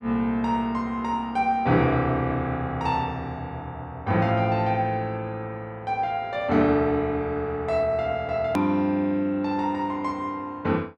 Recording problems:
edit click; at 8.5 s

